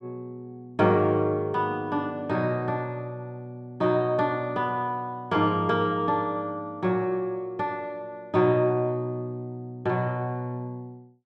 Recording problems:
none

